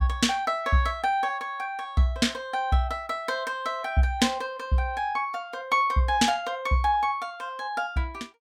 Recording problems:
none

